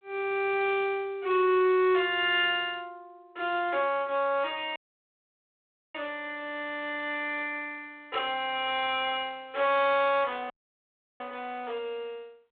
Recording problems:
phone line; 320 Hz to 3.8 kHz, G.726
distorted audio; hard clipping, uneven, signal-to-distortion ratio 11 dB
dropout; at 5 s for 1 s and at 11 s for 0.5 s

